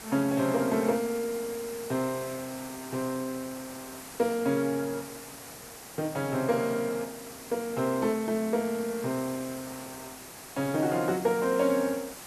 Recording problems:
background hiss; SNR 13 dB

